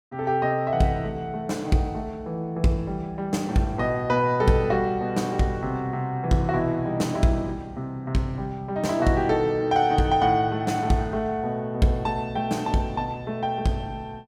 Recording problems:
none

